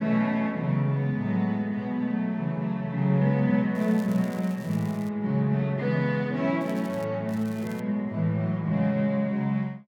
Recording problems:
crackling; from 4 to 5 s, at 6.5 s and at 7.5 s; loose cable, SNR 25 dB

